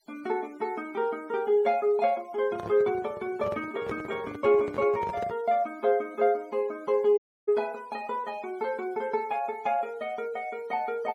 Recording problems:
denoising artefacts; signal-to-artefact ratio 26 dB
microphone handling noise; from 2.5 to 5.5 s; peak -4 dB vs average level
audio cutting out; at 7 s

